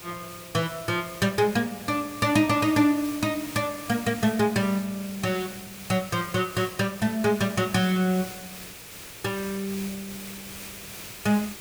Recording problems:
hiss; SNR 13 dB

